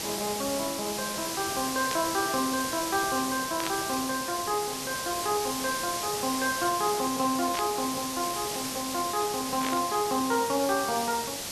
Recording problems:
hiss; SNR 3 dB
static burst; 4 times, first at 2 s; peak 0 dB vs average level

